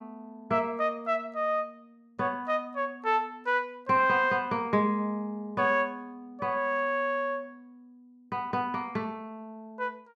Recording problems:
none

